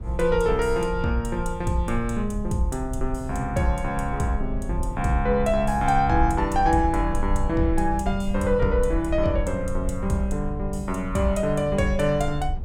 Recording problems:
rumble; below 66 Hz, SNR 7 dB

